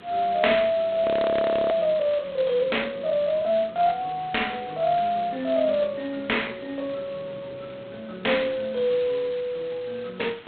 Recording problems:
phone line; 320 Hz to 3.9 kHz, G.726
background hiss; SNR 27 dB
wind on the microphone; below 830 Hz, SNR 20 dB
audio freezing; at 1 s for 0.5 s

